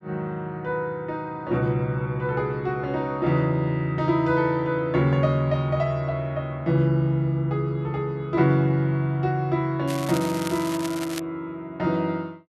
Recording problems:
crackle; from 10 to 11 s; loose cable, SNR 12 dB

